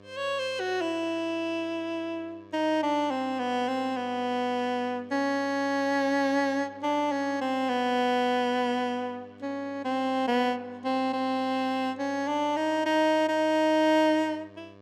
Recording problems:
hum; 50 Hz, harmonics up to 2.3 kHz, SNR 25 dB

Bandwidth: 16.5 kHz